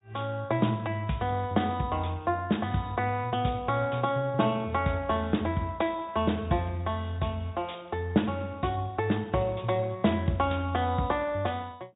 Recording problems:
treble cut off; nothing above 3.8 kHz
lossy compression; Speex, log-spectral distance 3 dB

